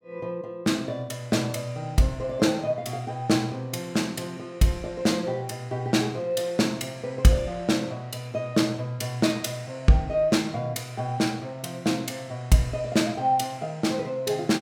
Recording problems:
none

